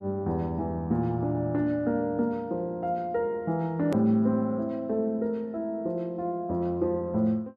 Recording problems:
click at an edit; at 4 s

